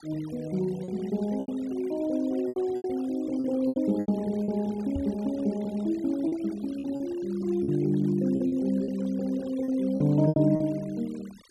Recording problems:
noise reduction artefacts; signal-to-artefact ratio 23 dB
lost packets; 9% of the sound replaced, filled with repeated pitch periods
microphone thump; at 5 s; peak -3 dB vs average level

